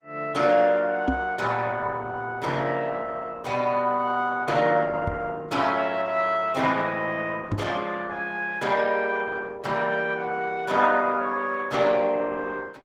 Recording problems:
lossy compression; Opus, log-spectral distance 4 dB, nothing above 18.9 kHz
microphone bump; at 1 s, at 5 s and at 7.5 s; peak +3 dB vs average level

